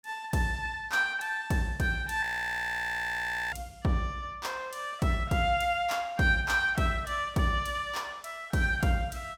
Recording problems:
frozen audio; at 2 s for 1.5 s

